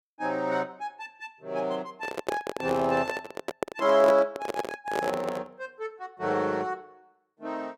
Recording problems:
handling noise; from 2 to 5.5 s; peak +4 dB vs average level

